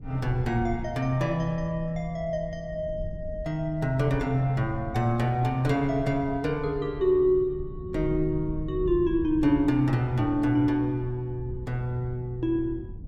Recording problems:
low-frequency rumble; below 110 Hz, SNR 13 dB

